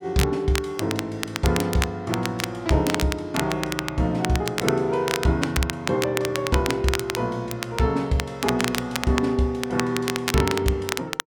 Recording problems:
crackling; vinyl, SNR 6 dB

